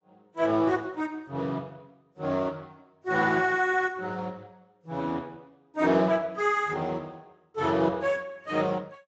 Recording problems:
lossy codec; Speex, then AAC, log-spectral distance 3 dB, nothing above 7.3 kHz

